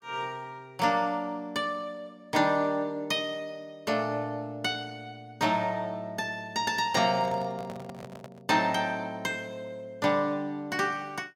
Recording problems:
microphone handling noise; from 7 to 8.5 s; peak -9 dB vs average level

